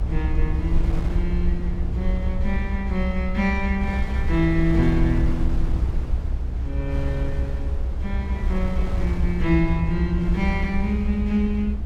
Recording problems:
low-frequency rumble; below 66 Hz, SNR 0 dB
wind noise; below 380 Hz, SNR 12 dB

